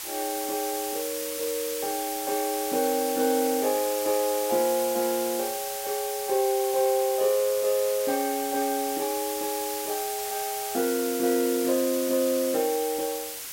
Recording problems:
background hiss; slope +2 dB per octave, SNR 5 dB

